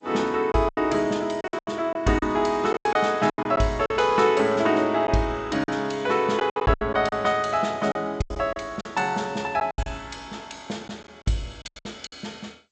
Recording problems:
lossy codec; G.722, log-spectral distance 3 dB, nothing above 7.8 kHz
packet loss; 11% of the sound replaced, filled with silence

